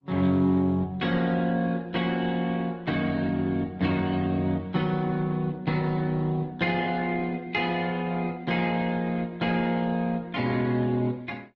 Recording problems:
codec artefacts; Speex, then Opus, log-spectral distance 3 dB

